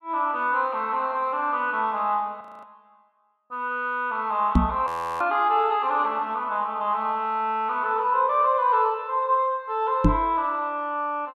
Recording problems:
frozen audio; at 2.5 s and at 5 s
microphone thump; at 4.5 s and at 10 s; peak +8 dB vs average level

